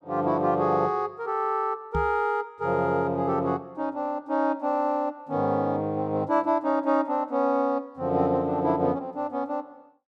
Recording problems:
microphone thump; at 2 s; peak -2 dB vs average level

